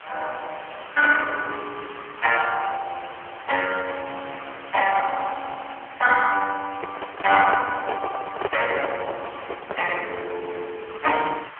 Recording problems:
telephone audio; 320 Hz to 3.2 kHz, AMR-NB
background hiss; SNR 16 dB
handling noise; from 6.5 to 10 s; peak 0 dB vs average level

